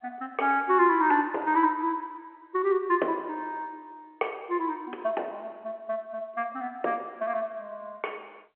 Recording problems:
telephone audio; 320 Hz to 3.4 kHz, G.711

